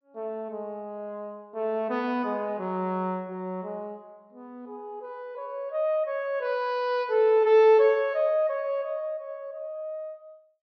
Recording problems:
treble missing; nothing above 6.4 kHz

